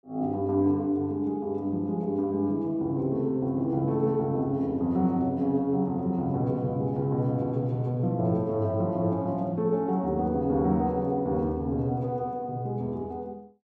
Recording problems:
none

